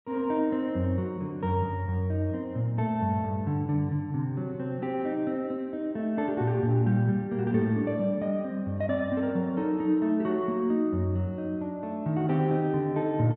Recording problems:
none

